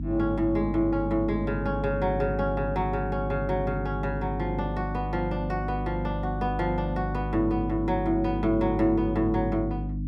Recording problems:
hum; 50 Hz, harmonics up to 300 Hz, SNR 4 dB

